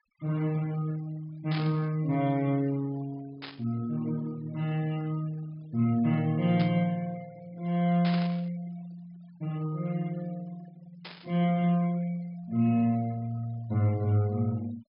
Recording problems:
treble cut off; nothing above 5.5 kHz
noise reduction artefacts; signal-to-artefact ratio 24 dB
burst of static; 5 times, first at 1.5 s; peak -6 dB vs average level

